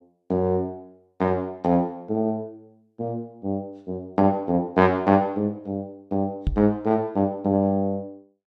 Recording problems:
knock on the microphone; at 6.5 s; peak +3 dB vs average level

